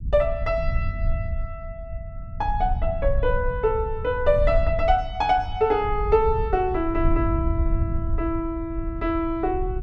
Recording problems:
rumble; below 76 Hz, SNR 5 dB

